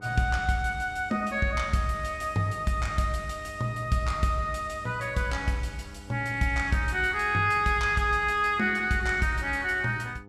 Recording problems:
hum; 50 Hz, harmonics up to 1.3 kHz, SNR 23 dB

